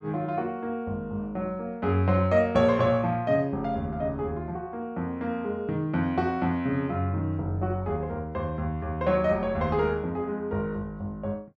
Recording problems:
none

